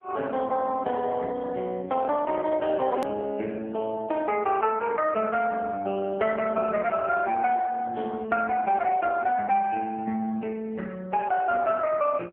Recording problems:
telephone audio; 260 Hz to 3.3 kHz, AMR-NB
hard cut with a click; at 3 s

